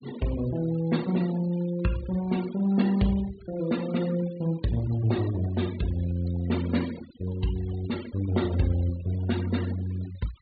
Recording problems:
treble missing; nothing above 4.5 kHz
noise reduction artefacts; signal-to-artefact ratio 17 dB

